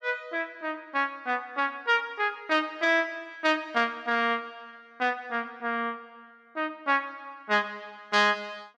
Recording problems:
none

